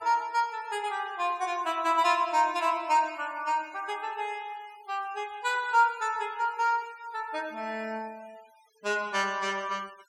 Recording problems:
noise reduction artefacts; signal-to-artefact ratio 27 dB

